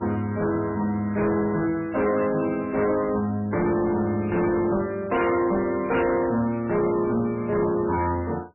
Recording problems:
lossy codec; MP3, log-spectral distance 3 dB, nothing above 2.4 kHz
distortion; soft clipping, signal-to-distortion ratio 10 dB

